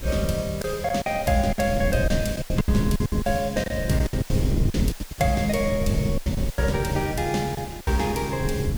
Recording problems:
hiss; SNR 15 dB
wind on the microphone; below 170 Hz, SNR 4 dB
lost packets; 13% of the sound replaced, filled with silence

